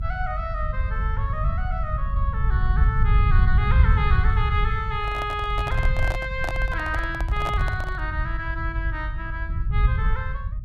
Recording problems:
low-frequency rumble; below 90 Hz, SNR -4 dB
handling noise; from 5 to 8 s; peak +2 dB vs average level

